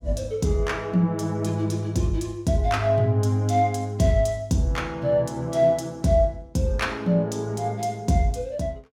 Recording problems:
none

